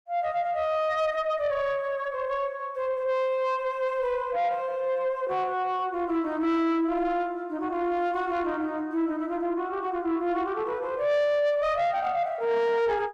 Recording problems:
distorted audio; soft clipping, signal-to-distortion ratio 12 dB

